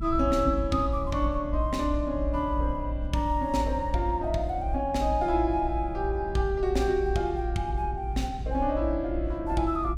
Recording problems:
low-frequency rumble; below 60 Hz, strongest tone 56 Hz, SNR 5 dB

